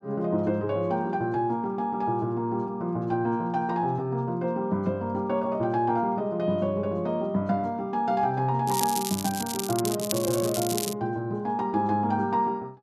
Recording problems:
crackle; from 8.5 to 11 s; loose cable, SNR 5 dB

